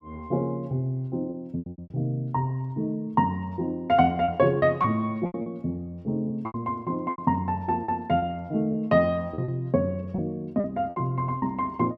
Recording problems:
packet loss; 9% of the sound replaced, filled with repeated pitch periods

